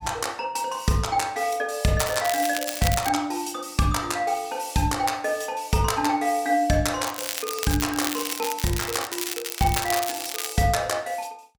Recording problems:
crackling; from 2 to 3 s and from 7 to 11 s; loose cable, SNR 5 dB

